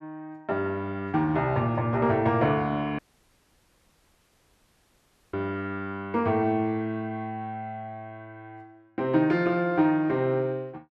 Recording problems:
audio cutting out; at 3 s for 2.5 s

